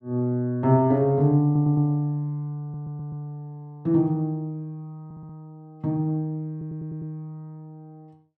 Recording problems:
audio stuttering; 4 times, first at 1.5 s

